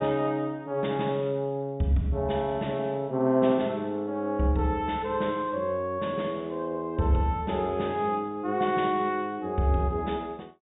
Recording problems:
low-pass filter; nothing above 4 kHz

